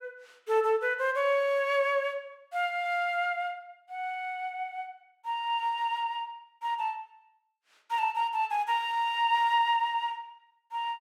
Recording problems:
none

